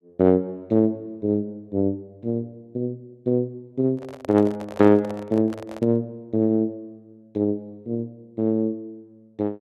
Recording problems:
microphone handling noise; from 4 to 6 s; peak -8 dB vs average level

